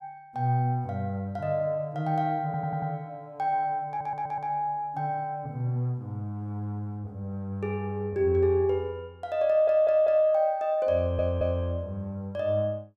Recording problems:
audio stuttering; 4 times, first at 2.5 s

